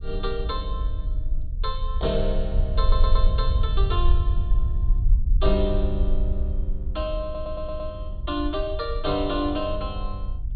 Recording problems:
treble cut off; nothing above 4.4 kHz
rumble; below 58 Hz, SNR -2 dB
stutter; at 3 s and at 7 s

